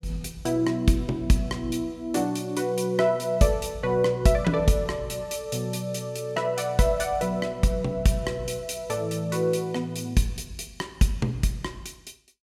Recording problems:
none

